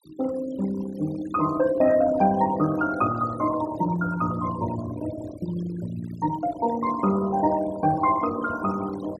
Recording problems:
noise reduction artefacts; signal-to-artefact ratio 15 dB

